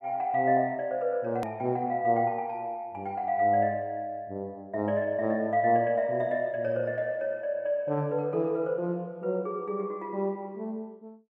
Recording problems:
hard cut with a click; at 1.5 s

